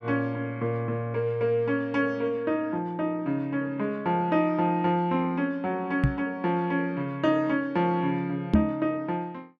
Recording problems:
microphone bump; at 6 s and at 8.5 s; peak +10 dB vs average level

